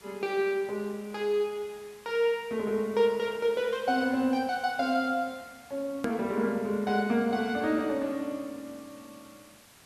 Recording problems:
hiss; slope -1 dB per octave, SNR 24 dB
click at an edit; at 6 s

